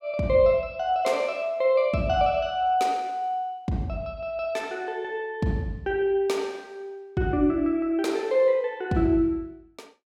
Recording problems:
none

